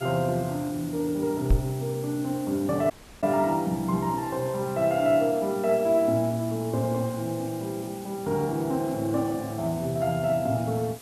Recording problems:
background hiss; SNR 18 dB
knock on the microphone; at 1.5 s; peak +8 dB vs average level
audio cutting out; at 3 s

